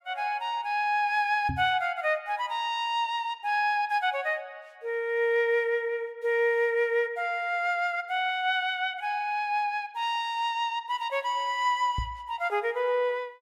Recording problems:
microphone thump; at 1.5 s and at 12 s; peak -1 dB vs average level

